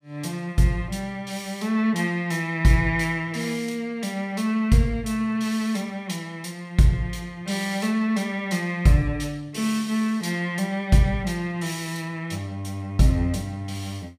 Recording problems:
none

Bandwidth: 15.5 kHz